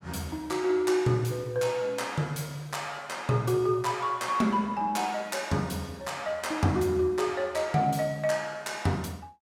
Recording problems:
none

